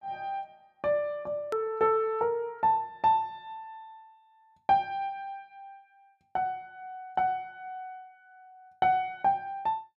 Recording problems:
edit click; at 1.5 s

